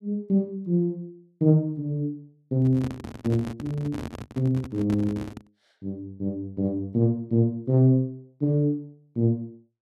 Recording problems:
microphone handling noise; from 2.5 to 5.5 s; peak -5 dB vs average level

